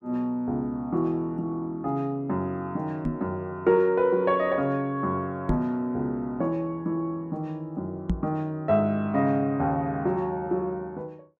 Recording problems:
microphone bump; at 3 s, at 5.5 s and at 8 s; peak +5 dB vs average level

